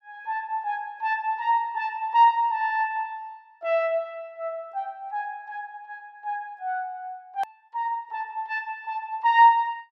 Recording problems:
click at an edit; at 7.5 s

